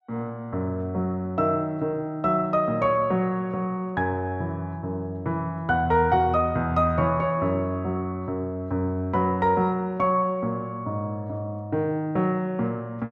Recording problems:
none

